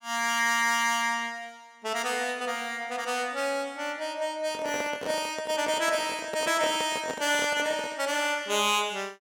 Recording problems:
handling noise; from 4.5 to 8 s; peak -3 dB vs average level

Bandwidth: 17 kHz